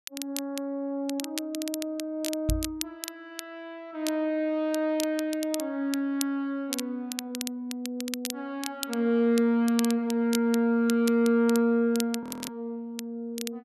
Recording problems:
crackling; vinyl, SNR 10 dB
knock on the microphone; at 2.5 s; peak +3 dB vs average level
frozen audio; at 12 s

